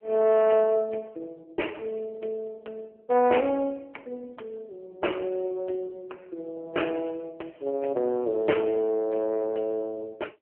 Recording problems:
phone line; 300 Hz to 3.1 kHz, AMR-NB

